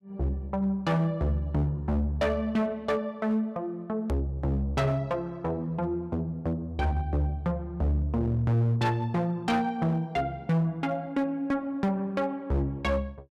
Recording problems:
distorted audio; hard clipping, signal-to-distortion ratio 11 dB
click at an edit; at 4 s

